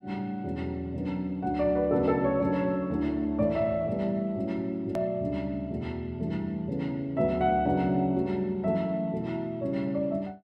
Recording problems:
edit click; at 5 s

